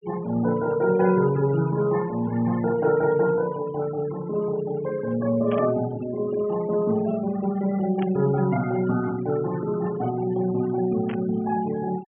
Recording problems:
treble cut off; nothing above 3.3 kHz
noise reduction artefacts; signal-to-artefact ratio 19 dB
burst of static; at 5.5 s, at 8 s and at 11 s; peak -11 dB vs average level

